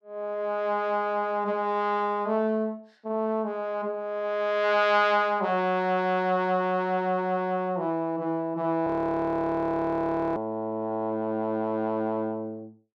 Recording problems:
audio freezing; at 9 s for 1.5 s

